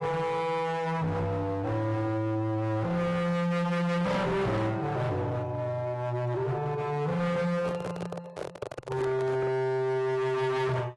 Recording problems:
lossy compression; AAC, log-spectral distance 2 dB, nothing above 11.3 kHz
distorted audio; hard clipping, uneven, signal-to-distortion ratio 6 dB
handling noise; from 7.5 to 9.5 s; peak -2 dB vs average level

